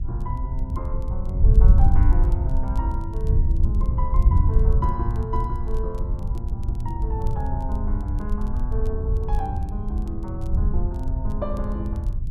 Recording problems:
wind noise; below 76 Hz, SNR -9 dB
crackling; vinyl, SNR 27 dB

